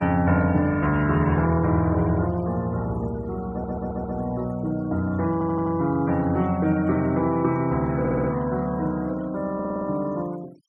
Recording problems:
noise reduction artefacts; signal-to-artefact ratio 24 dB
stutter; 4 times, first at 3.5 s

